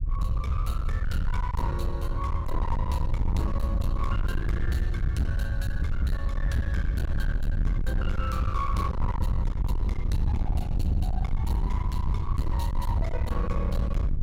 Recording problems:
distorted audio; hard clipping, signal-to-distortion ratio 7 dB
low-frequency rumble; below 84 Hz, SNR -4 dB

